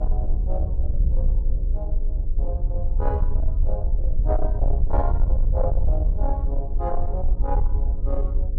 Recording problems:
distorted audio; soft clipping, signal-to-distortion ratio 12 dB
mains hum; 60 Hz, harmonics up to 540 Hz, SNR 10 dB
low-frequency rumble; below 54 Hz, SNR -8 dB

